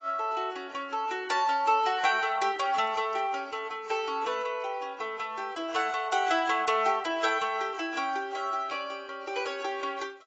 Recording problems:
lossy codec; AAC, log-spectral distance 3 dB, nothing above 7.6 kHz

